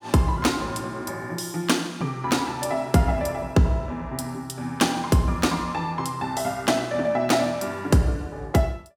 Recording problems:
none

